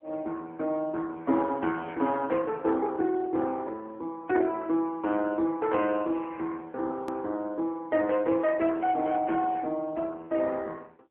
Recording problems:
phone line; 220 Hz to 3.7 kHz, AMR-NB
hard cut with a click; at 7 s

